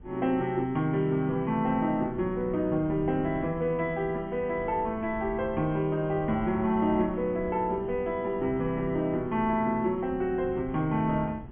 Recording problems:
low-pass filter; nothing above 3.4 kHz
wind noise; below 170 Hz, SNR 18 dB

